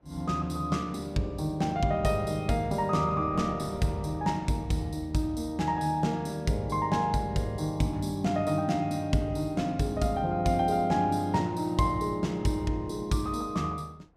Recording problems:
wind noise; below 620 Hz, SNR 23 dB

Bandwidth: 14.5 kHz